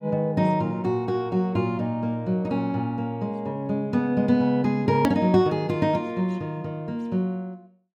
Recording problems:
edit click; at 5 s

